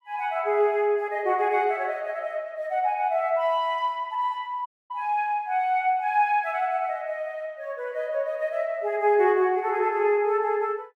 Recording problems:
audio cutting out; at 4.5 s

